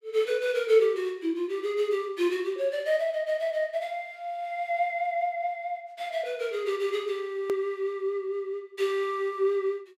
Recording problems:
hard cut with a click; at 7.5 s

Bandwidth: 15.5 kHz